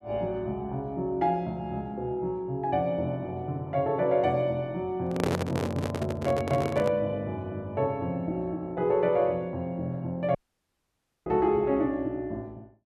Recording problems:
microphone handling noise; from 5 to 7 s; peak +3 dB vs average level
dropout; at 10 s for 1 s

